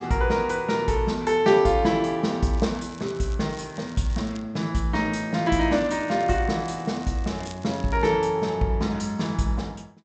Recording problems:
treble missing; nothing above 8 kHz
crackle; from 2.5 to 4.5 s and from 5.5 to 8 s; loose cable, SNR 24 dB

